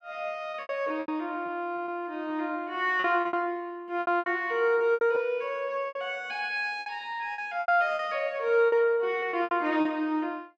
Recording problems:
lost packets; 12% of the sound replaced, filled with repeated pitch periods

